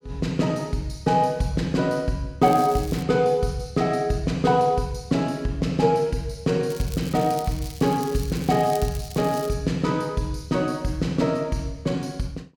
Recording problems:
crackle; at 2.5 s and from 6.5 to 9.5 s; loose cable, SNR 17 dB

